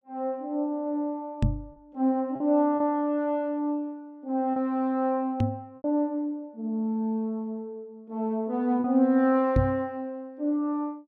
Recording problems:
lost packets; 2% of the sound replaced, filled with repeated pitch periods
knock on the microphone; at 1.5 s, at 5.5 s and at 9.5 s; peak +7 dB vs average level

